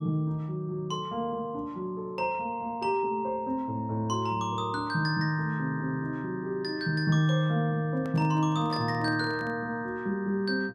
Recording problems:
microphone handling noise; from 8 to 9.5 s; peak -11 dB vs average level

